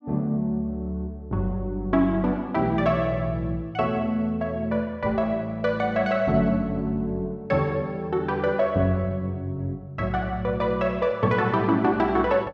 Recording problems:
none

